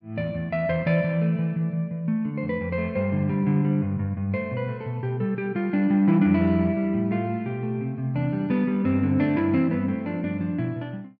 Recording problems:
none

